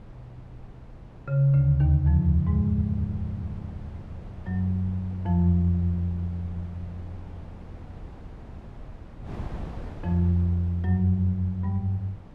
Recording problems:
wind on the microphone; below 220 Hz, SNR 18 dB

